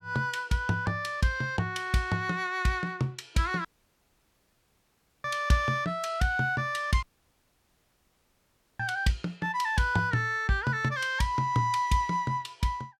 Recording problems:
audio cutting out; at 3.5 s for 1.5 s and at 7 s for 2 s

